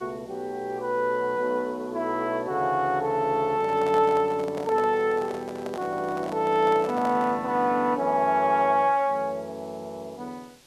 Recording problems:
background hiss; SNR 29 dB
microphone handling noise; from 3.5 to 7.5 s; peak -6 dB vs average level

